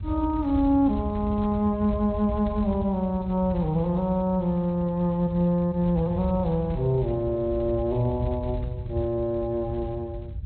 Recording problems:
codec artefacts; Speex, log-spectral distance 2 dB
rumble; below 100 Hz, SNR 9 dB

